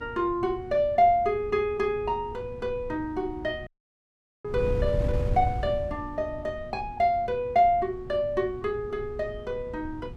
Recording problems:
hum; 60 Hz, harmonics up to 1.2 kHz, SNR 22 dB
wind on the microphone; below 120 Hz, SNR 11 dB
dropout; at 3.5 s for 1 s

